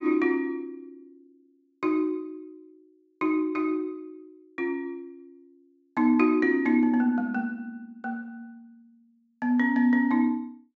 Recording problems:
treble cut off; nothing above 8 kHz

